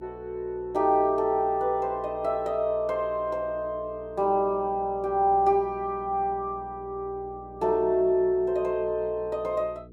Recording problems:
electrical hum; 60 Hz, harmonics up to 480 Hz, SNR 21 dB

